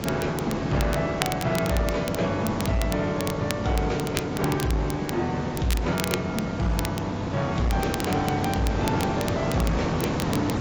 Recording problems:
lossy codec; AAC, log-spectral distance 3 dB
distorted audio; hard clipping, uneven, signal-to-distortion ratio 11 dB
background hiss; slope -7 dB per octave, SNR 3 dB
crackle; vinyl, SNR 9 dB

